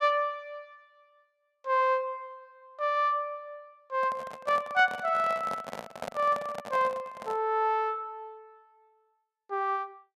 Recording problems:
handling noise; from 4 to 7.5 s; peak -3 dB vs average level

